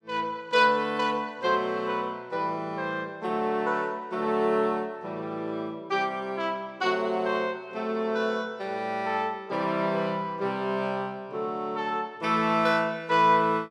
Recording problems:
none

